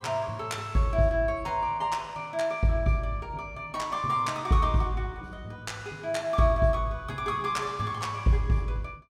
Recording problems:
none

